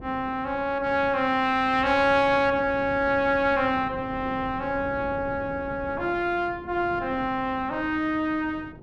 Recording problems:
wind noise; below 360 Hz, SNR 16 dB

